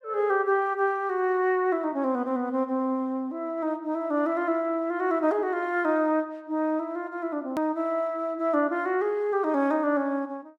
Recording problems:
click at an edit; at 7.5 s

